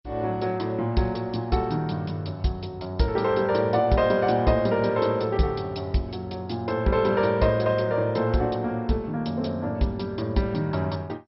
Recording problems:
lossy codec; MP2, log-spectral distance 4 dB, nothing above 5.5 kHz

